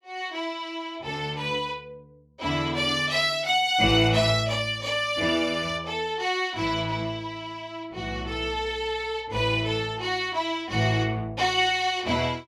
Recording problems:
none

